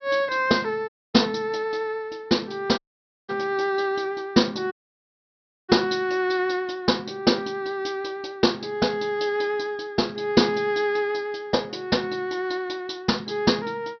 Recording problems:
treble cut off; nothing above 5.8 kHz
audio cutting out; at 1 s, at 3 s for 0.5 s and at 4.5 s for 1 s

